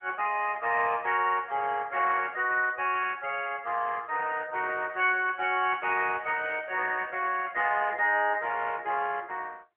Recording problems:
telephone audio; 340 Hz to 3.1 kHz, AMR-NB

